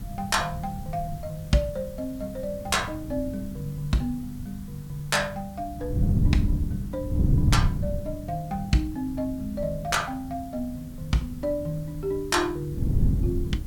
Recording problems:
background hiss; SNR 22 dB
wind on the microphone; below 150 Hz, SNR 1 dB

